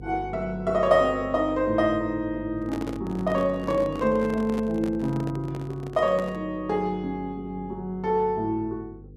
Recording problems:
electrical hum; 50 Hz, harmonics up to 500 Hz, SNR 16 dB
handling noise; from 2.5 to 6.5 s; peak -5 dB vs average level

